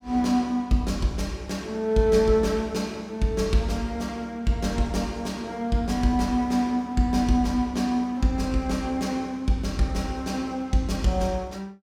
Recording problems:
none

